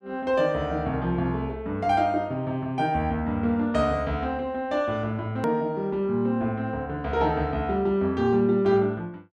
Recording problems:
click at an edit; at 5.5 s

